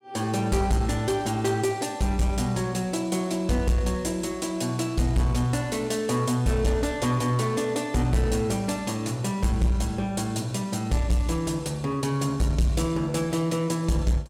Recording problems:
distortion; soft clipping, signal-to-distortion ratio 11 dB

